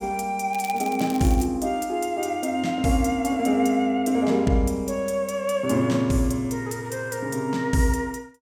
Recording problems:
crackle; at 0.5 s; loose cable, SNR 17 dB

